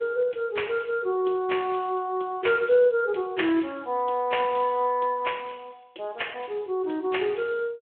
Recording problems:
telephone audio; 300 Hz to 3.4 kHz, Speex

